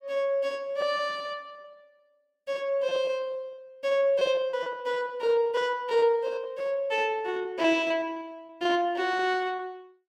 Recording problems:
packet loss; 16% of the sound replaced, filled with repeated pitch periods

